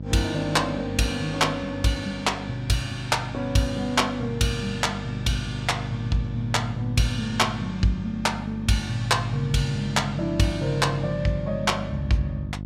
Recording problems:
hum; 50 Hz, harmonics up to 600 Hz, SNR 9 dB

